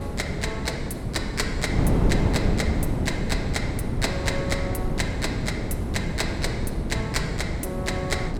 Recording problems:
wind noise; below 270 Hz, SNR -3 dB

